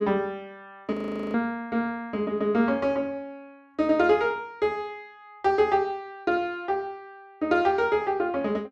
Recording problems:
frozen audio; at 1 s

